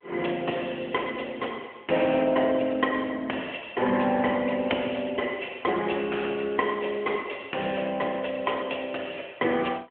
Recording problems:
telephone audio; 280 Hz to 3.3 kHz, AMR-NB

